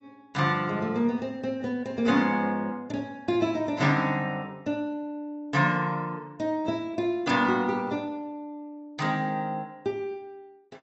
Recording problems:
codec artefacts; AAC, log-spectral distance 2 dB, nothing above 7.6 kHz

